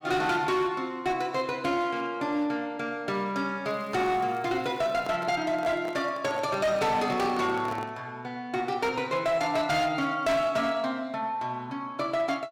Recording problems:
distortion; hard clipping, signal-to-distortion ratio 11 dB
crackling; from 3.5 to 5 s; loose cable, SNR 29 dB
microphone handling noise; from 5 to 8 s; peak -6 dB vs average level

